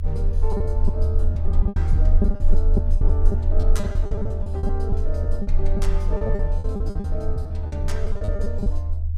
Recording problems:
rumble; below 76 Hz, strongest tone 20 Hz, SNR -8 dB
lost packets; 16% of the sound replaced, filled with repeated pitch periods

